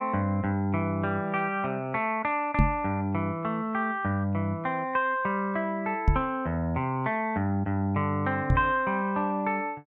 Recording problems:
microphone thump; at 2.5 s, at 6 s and at 8.5 s; peak +8 dB vs average level

